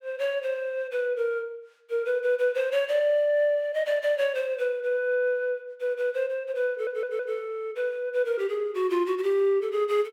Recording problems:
stutter; at 6.5 s

